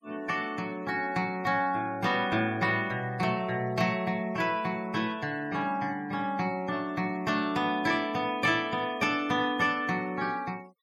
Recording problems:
denoising artefacts; signal-to-artefact ratio 23 dB

